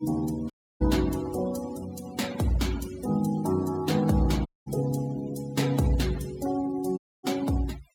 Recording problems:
denoising artefacts; signal-to-artefact ratio 16 dB
audio cutting out; at 0.5 s, at 4.5 s and at 7 s

